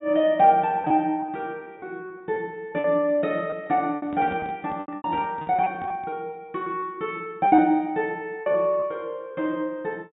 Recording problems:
treble cut off; nothing above 4 kHz
packet loss; 8% of the sound replaced, filled with repeated pitch periods
microphone handling noise; from 4 to 6 s; peak -8 dB vs average level

